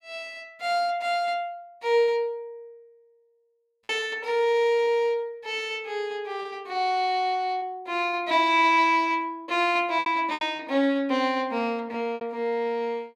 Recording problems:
lost packets; 4% of the sound replaced, filled with repeated pitch periods

